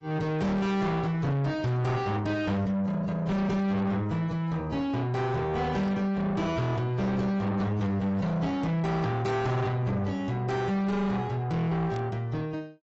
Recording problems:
lossy compression; AAC, log-spectral distance 2 dB, nothing above 7.6 kHz
distortion; soft clipping, signal-to-distortion ratio 7 dB
burst of static; at 12 s; peak -14 dB vs average level

